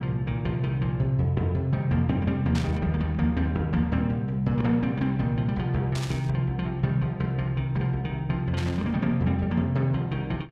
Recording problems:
burst of static; at 2.5 s, at 6 s and at 8.5 s; peak -6 dB vs average level

